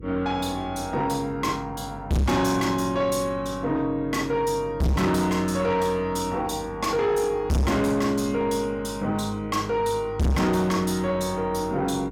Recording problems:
distorted audio; soft clipping, signal-to-distortion ratio 6 dB
electrical hum; 50 Hz, harmonics up to 500 Hz, SNR 18 dB

